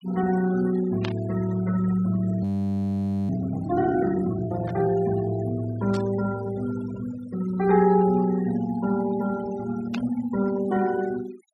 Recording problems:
denoising artefacts; signal-to-artefact ratio 16 dB
burst of static; 4 times, first at 1 s; peak -4 dB vs average level
audio freezing; at 2.5 s for 1 s

